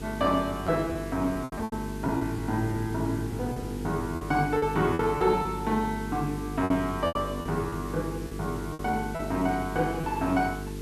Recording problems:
hum; 50 Hz, harmonics up to 450 Hz, SNR 7 dB
background hiss; slope -1 dB per octave, SNR 19 dB
packet loss; 8% of the sound replaced, filled with repeated pitch periods

